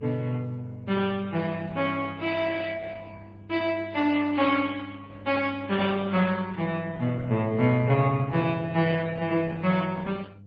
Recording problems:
lossy compression; MP3, then Opus, log-spectral distance 3 dB
electrical hum; 50 Hz, harmonics up to 500 Hz, SNR 19 dB

